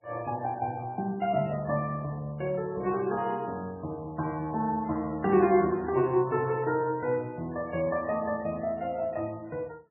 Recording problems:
lossy codec; MP3, log-spectral distance 2 dB, nothing above 2.8 kHz

